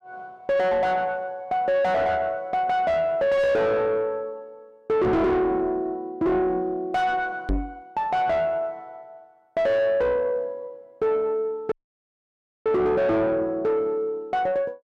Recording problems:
distorted audio; soft clipping, signal-to-distortion ratio 5 dB
microphone thump; at 5 s and at 7.5 s; peak +2 dB vs average level
audio cutting out; at 12 s for 1 s

